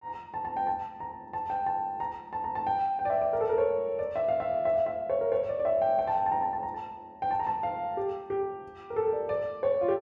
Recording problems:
none

